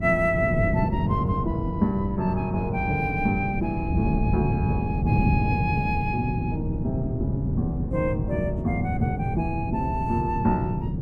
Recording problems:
wind noise; below 200 Hz, SNR 0 dB

